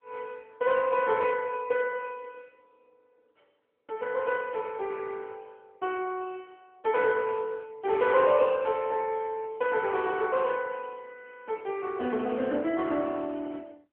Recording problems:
telephone audio; 110 Hz to 2.6 kHz, AMR-NB

